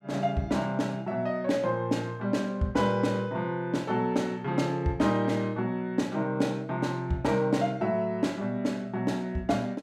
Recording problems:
none

